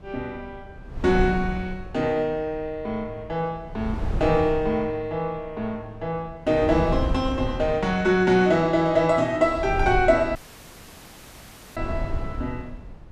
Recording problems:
wind on the microphone; below 130 Hz, SNR 9 dB
audio cutting out; at 10 s for 1.5 s

